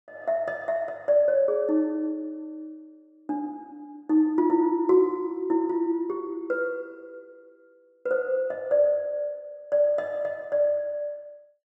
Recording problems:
none

